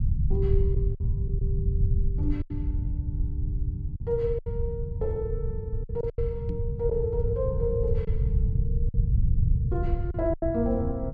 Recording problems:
rumble; below 110 Hz, SNR -3 dB
packet loss; 6% of the sound replaced, filled with silence
knock on the microphone; at 6.5 s; peak -3 dB vs average level

